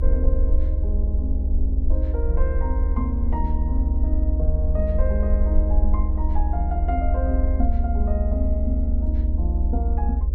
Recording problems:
hum; 50 Hz, harmonics up to 600 Hz, SNR 11 dB
rumble; below 70 Hz, SNR -7 dB

